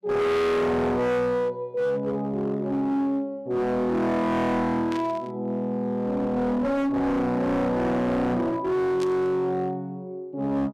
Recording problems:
distortion; hard clipping, uneven, signal-to-distortion ratio 6 dB
static burst; at 5 s and at 9 s; peak -9 dB vs average level

